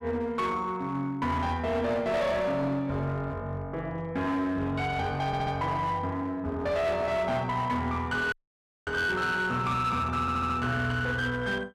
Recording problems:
distortion; hard clipping, uneven, signal-to-distortion ratio 10 dB
audio stuttering; at 5.5 s and at 10 s
dropout; at 8.5 s for 0.5 s

